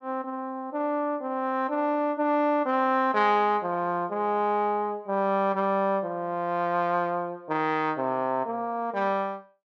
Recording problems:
none

